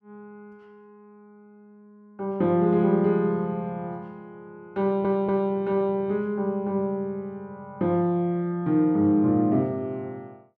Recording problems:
stutter; at 5 s

